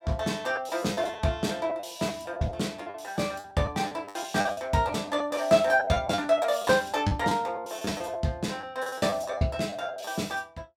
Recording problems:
lost packets; 13% of the sound replaced, filled with the last packet

